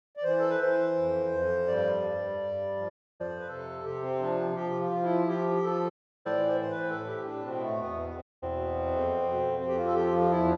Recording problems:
audio cutting out; at 3 s, at 6 s and at 8 s

